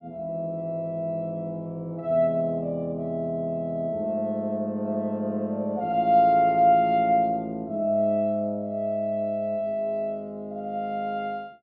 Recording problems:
none

